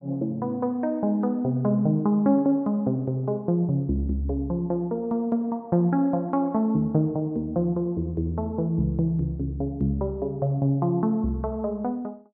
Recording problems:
none

